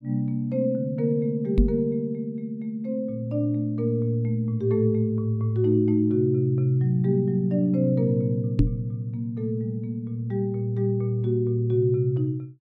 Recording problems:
knock on the microphone; at 1.5 s and at 8.5 s; peak +7 dB vs average level

